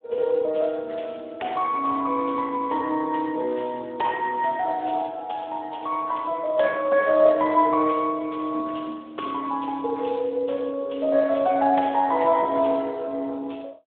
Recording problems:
phone line; 280 Hz to 3.6 kHz, Speex

